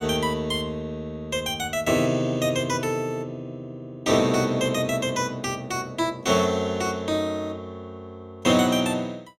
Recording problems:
none

